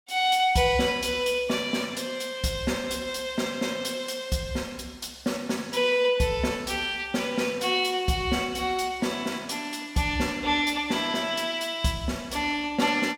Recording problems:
none

